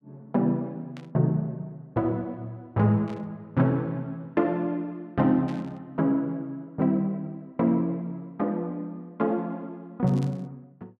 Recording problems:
static burst; 4 times, first at 1 s; peak -14 dB vs average level

